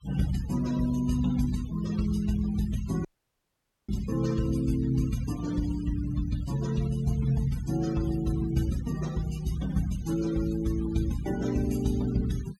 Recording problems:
noise reduction artefacts; signal-to-artefact ratio 16 dB
audio cutting out; at 3 s for 1 s

